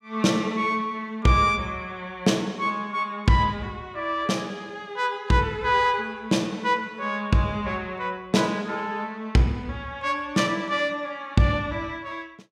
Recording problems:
none

